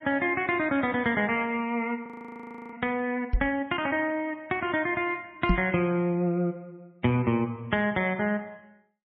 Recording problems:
codec artefacts; MP3, log-spectral distance 2 dB, nothing above 3.2 kHz
frozen audio; at 2 s for 0.5 s
microphone thump; at 3.5 s and at 5.5 s; peak +6 dB vs average level

